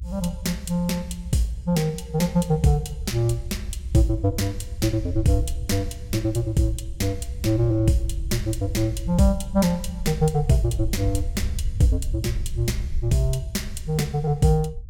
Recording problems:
rumble; below 70 Hz, SNR 9 dB

